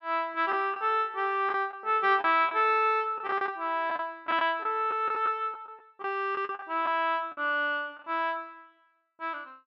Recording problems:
packet loss; 7% of the sound replaced, filled with the last packet

